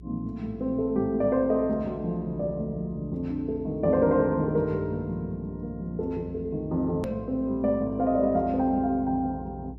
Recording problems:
electrical hum; 60 Hz, harmonics up to 420 Hz, SNR 18 dB
click at an edit; at 7 s

